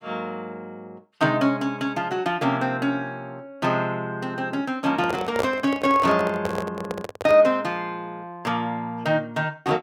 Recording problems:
microphone handling noise; from 5 to 7.5 s; peak +2 dB vs average level

